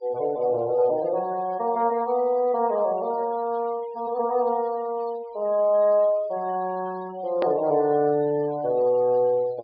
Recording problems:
treble cut off; nothing above 5 kHz
denoising artefacts; signal-to-artefact ratio 23 dB
edit click; at 7.5 s

